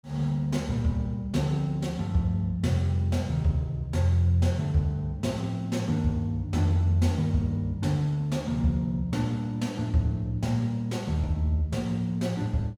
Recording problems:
none

